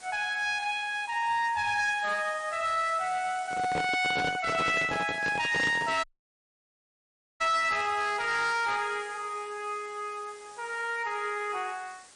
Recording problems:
lossy compression; MP3, log-spectral distance 7 dB, nothing above 8.5 kHz
distorted audio; hard clipping, uneven, signal-to-distortion ratio 11 dB
hiss; slope -1 dB per octave, SNR 21 dB
handling noise; from 3.5 to 6 s; peak -1 dB vs average level
dropout; at 6 s for 1.5 s

